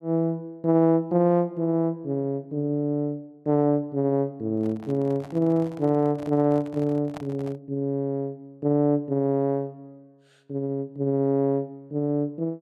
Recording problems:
microphone handling noise; from 4.5 to 7.5 s; peak -9 dB vs average level

